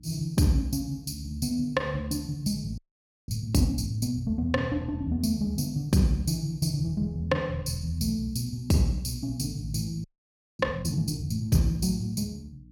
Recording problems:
electrical hum; 60 Hz, harmonics up to 300 Hz, SNR 26 dB
frozen audio; at 3 s for 0.5 s and at 10 s for 0.5 s

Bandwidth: 18 kHz